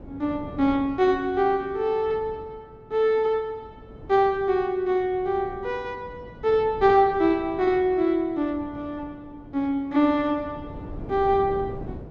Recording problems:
wind on the microphone; below 360 Hz, SNR 18 dB

